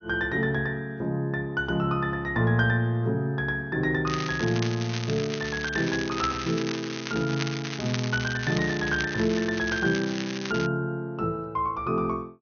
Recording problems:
low-pass filter; nothing above 6.3 kHz
crackle; from 4 to 11 s; loose cable, SNR 9 dB

